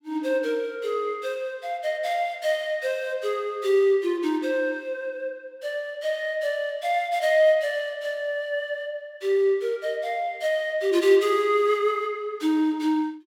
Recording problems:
none

